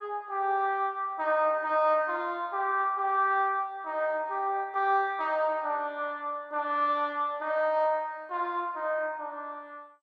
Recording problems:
lossy codec; MP2, log-spectral distance 2 dB

